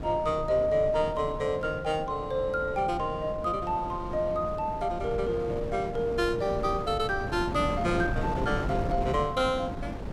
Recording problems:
wind noise; below 360 Hz, SNR 8 dB

